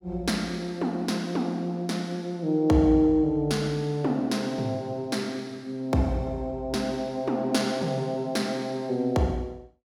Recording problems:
none

